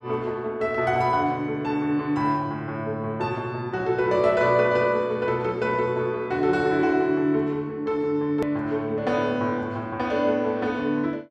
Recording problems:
hard cut with a click; at 8.5 s

